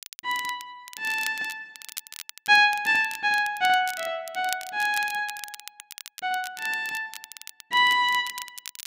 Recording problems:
crackling; vinyl, SNR 15 dB

